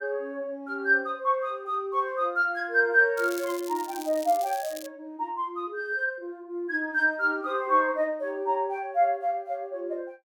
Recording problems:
crackle; from 3 to 5 s; loose cable, SNR 16 dB

